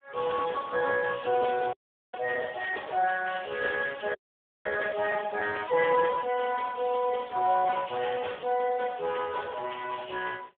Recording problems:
phone line; 320 Hz to 2.2 kHz, Speex
audio freezing; at 1.5 s and at 4 s for 0.5 s

